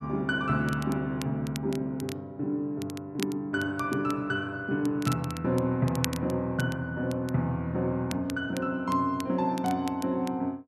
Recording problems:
crackle; vinyl, SNR 15 dB

